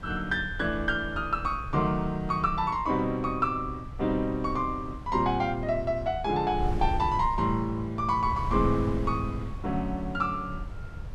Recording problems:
wind noise; below 100 Hz, SNR 10 dB

